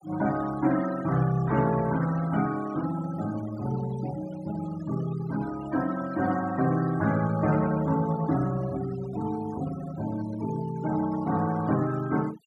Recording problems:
noise reduction artefacts; signal-to-artefact ratio 15 dB

